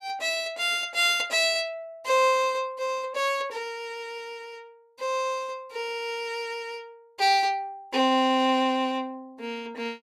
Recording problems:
none

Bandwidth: 15.5 kHz